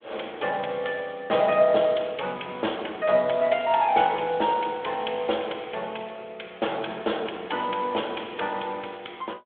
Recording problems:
telephone audio; 300 Hz to 3.6 kHz, Speex

